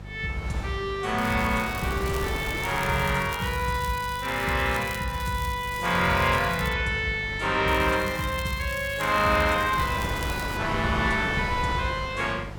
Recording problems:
hum; 50 Hz, harmonics up to 600 Hz, SNR 15 dB
wind on the microphone; below 1.3 kHz, SNR 11 dB
crackling; from 1 to 6.5 s and from 7.5 to 11 s; loose cable, SNR 16 dB

